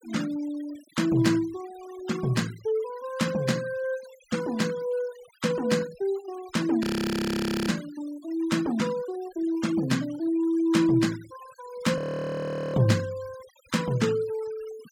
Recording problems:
denoising artefacts; signal-to-artefact ratio 18 dB
audio freezing; at 7 s for 1 s and at 12 s for 1 s

